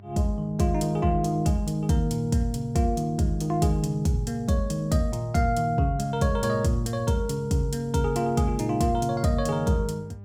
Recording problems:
hum; 50 Hz, harmonics up to 800 Hz, SNR 21 dB

